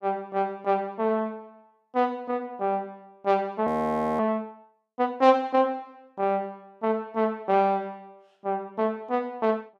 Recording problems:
audio freezing; at 3.5 s for 0.5 s

